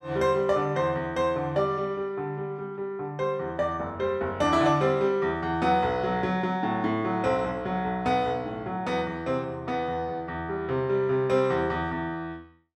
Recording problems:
none

